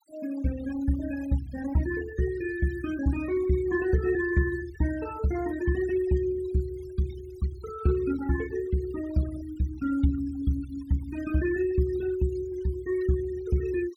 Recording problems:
noise reduction artefacts; signal-to-artefact ratio 16 dB

